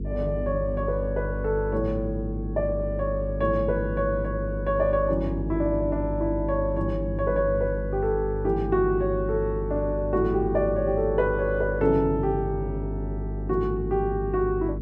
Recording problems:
hum; 50 Hz, harmonics up to 450 Hz, SNR 6 dB

